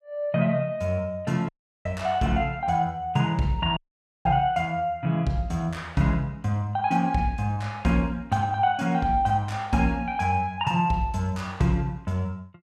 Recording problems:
dropout; at 1.5 s and at 4 s

